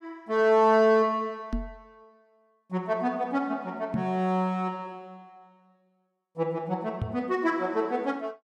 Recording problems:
microphone thump; at 1.5 s, at 4 s and at 7 s; peak 0 dB vs average level

